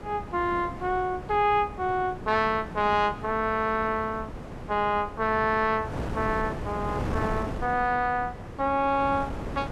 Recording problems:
wind noise; below 570 Hz, SNR 10 dB

